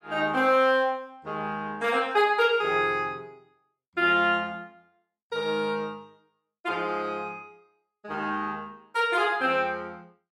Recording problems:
none

